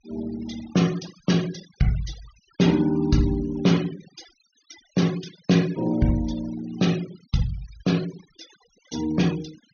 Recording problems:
treble missing; nothing above 6.5 kHz
noise reduction artefacts; signal-to-artefact ratio 18 dB

